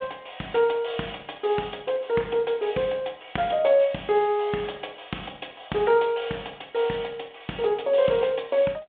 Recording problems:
telephone audio; 260 Hz to 3.5 kHz, G.726

